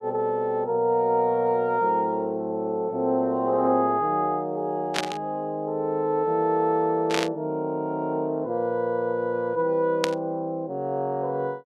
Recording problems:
burst of static; at 5 s, at 7 s and at 10 s; peak +3 dB vs average level

